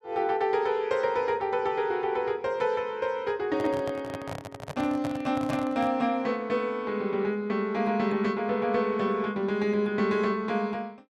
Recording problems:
microphone handling noise; from 3.5 to 6 s; peak -2 dB vs average level

